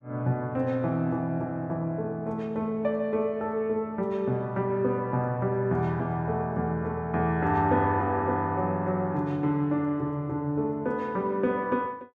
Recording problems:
none

